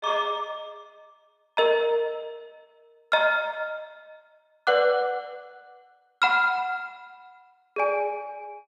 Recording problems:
none

